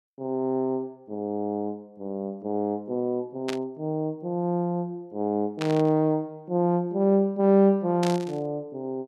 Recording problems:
burst of static; at 3.5 s, at 5.5 s and at 8 s; peak -3 dB vs average level

